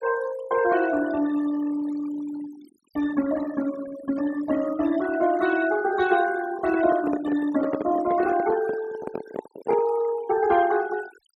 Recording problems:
denoising artefacts; signal-to-artefact ratio 15 dB
microphone handling noise; from 6.5 to 10 s; peak -1 dB vs average level

